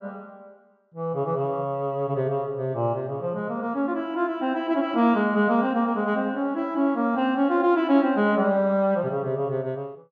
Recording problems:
low-pass filter; nothing above 8 kHz

